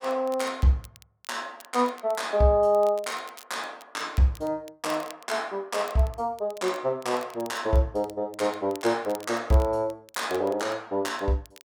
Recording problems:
crackle; vinyl, SNR 23 dB

